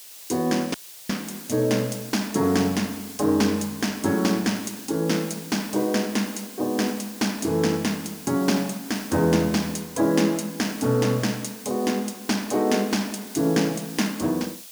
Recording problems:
background hiss; SNR 15 dB
audio cutting out; at 0.5 s

